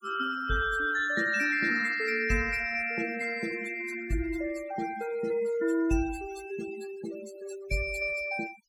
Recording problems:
noise reduction artefacts; signal-to-artefact ratio 15 dB

